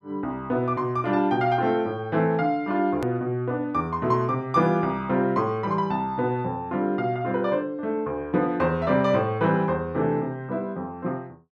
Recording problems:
edit click; at 3 s

